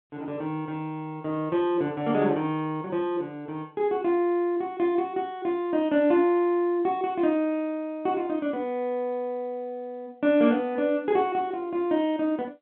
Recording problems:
telephone audio; 190 Hz to 3.5 kHz, G.711

